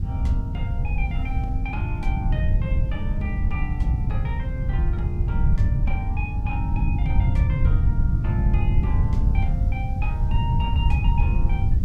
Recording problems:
hiss; SNR 25 dB
wind on the microphone; below 100 Hz, SNR -10 dB

